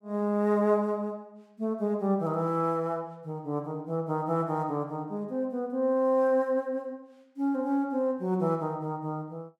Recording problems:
none

